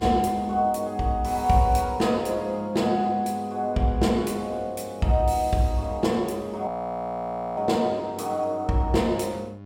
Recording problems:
hum; 50 Hz, harmonics up to 1.4 kHz, SNR 22 dB
frozen audio; at 6.5 s for 1 s

